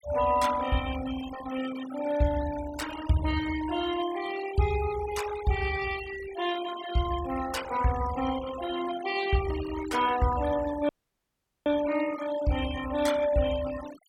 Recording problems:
denoising artefacts; signal-to-artefact ratio 12 dB
dropout; at 11 s for 1 s

